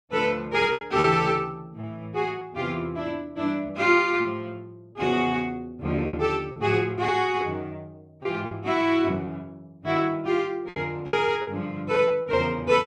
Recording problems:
packet loss; 6% of the sound replaced, filled with repeated pitch periods

